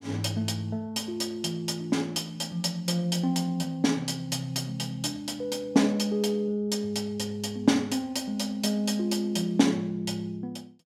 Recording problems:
none

